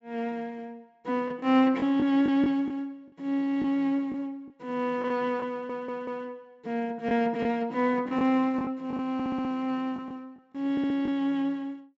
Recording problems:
treble missing; nothing above 8 kHz
packet loss; 5% of the sound replaced, filled with the last packet
stutter; at 5.5 s, at 9 s and at 11 s

